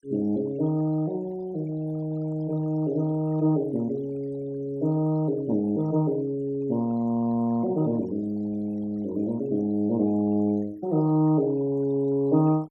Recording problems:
noise reduction artefacts; signal-to-artefact ratio 25 dB

